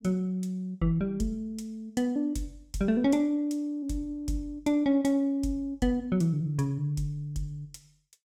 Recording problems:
none

